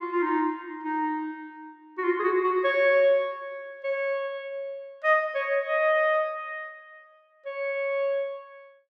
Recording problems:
none

